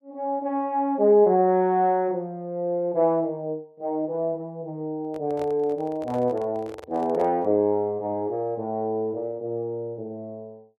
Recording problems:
handling noise; from 5 to 7.5 s; peak -10 dB vs average level

